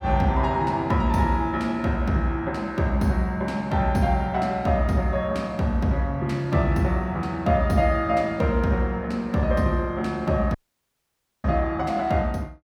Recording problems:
audio cutting out; at 11 s for 1 s

